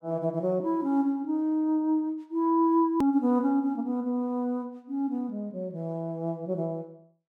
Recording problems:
edit click; at 3 s

